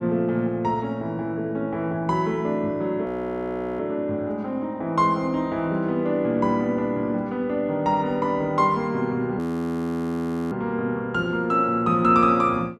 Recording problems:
frozen audio; at 3 s for 0.5 s and at 9.5 s for 1 s

